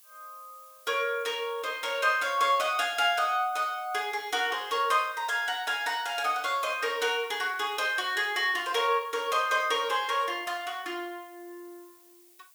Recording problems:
background hiss; slope +3 dB per octave, SNR 25 dB

